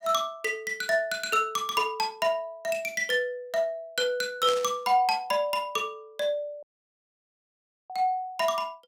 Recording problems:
static burst; at 4.5 s; peak -3 dB vs average level
dropout; at 6.5 s for 1.5 s

